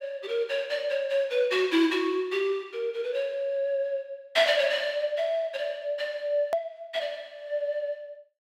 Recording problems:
hard cut with a click; at 6.5 s

